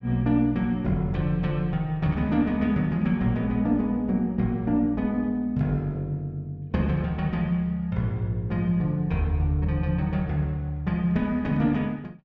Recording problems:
none

